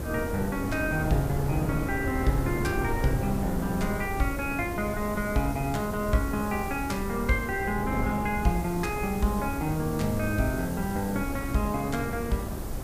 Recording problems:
background hiss; SNR 15 dB
wind noise; below 340 Hz, SNR 5 dB

